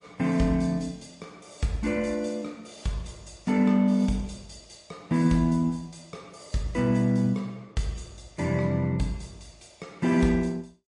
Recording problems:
lossy codec; MP3, log-spectral distance 3 dB, nothing above 10.4 kHz

